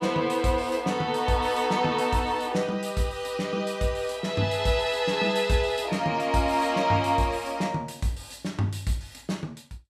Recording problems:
none

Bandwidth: 14.5 kHz